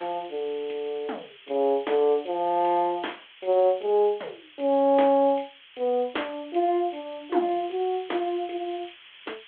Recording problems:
telephone audio; 300 Hz to 3.4 kHz, G.726
background hiss; SNR 22 dB

